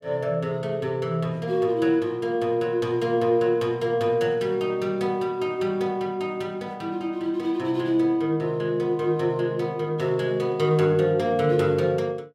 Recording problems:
none

